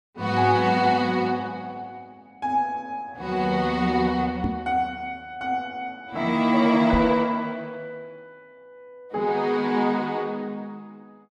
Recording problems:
microphone thump; at 4.5 s and at 7 s; peak +1 dB vs average level

